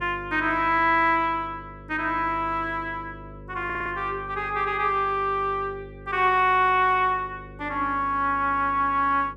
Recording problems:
hum; 50 Hz, harmonics up to 550 Hz, SNR 20 dB
audio stuttering; at 3.5 s

